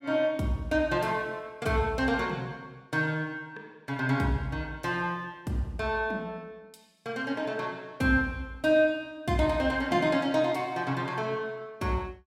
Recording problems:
none

